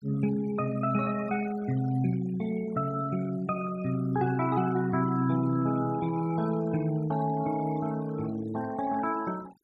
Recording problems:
denoising artefacts; signal-to-artefact ratio 19 dB

